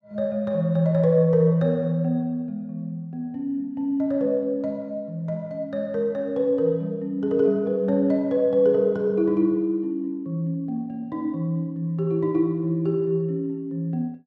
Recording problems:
none

